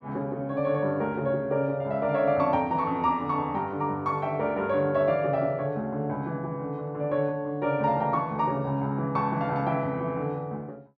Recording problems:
none

